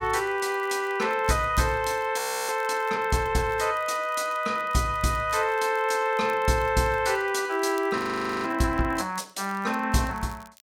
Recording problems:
crackling; vinyl, SNR 27 dB
audio freezing; at 2 s and at 8 s

